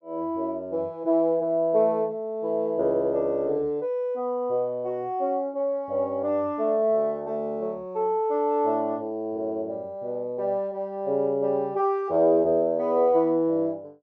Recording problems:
none

